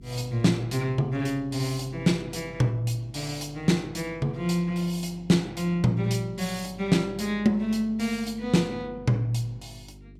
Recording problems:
hum; 50 Hz, harmonics up to 400 Hz, SNR 21 dB

